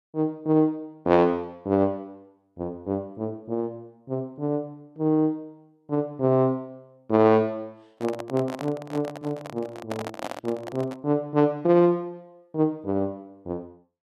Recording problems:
handling noise; from 8 to 11 s; peak -3 dB vs average level

